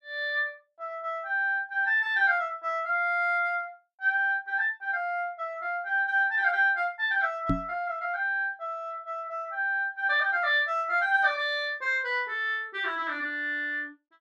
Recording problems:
knock on the microphone; at 7.5 s; peak +3 dB vs average level

